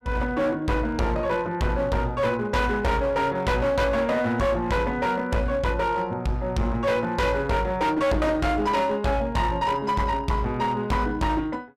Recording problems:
distorted audio; hard clipping, uneven, signal-to-distortion ratio 7 dB

